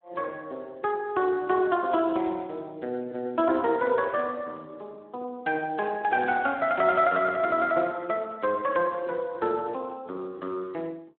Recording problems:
phone line; 170 Hz to 3.3 kHz, Speex

